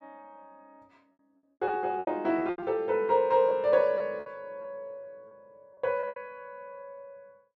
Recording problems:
lost packets; 9% of the sound replaced, filled with repeated pitch periods

